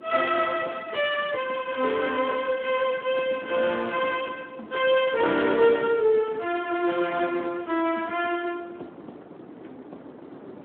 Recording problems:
phone line; 260 Hz to 3.5 kHz, Speex
wind on the microphone; below 570 Hz, SNR 19 dB

